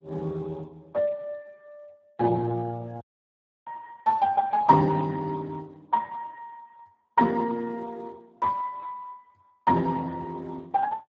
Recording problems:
codec artefacts; Speex, log-spectral distance 3 dB
dropout; at 3 s for 0.5 s

